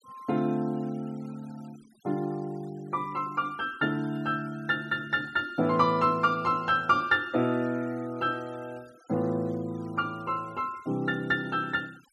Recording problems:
noise reduction artefacts; signal-to-artefact ratio 26 dB

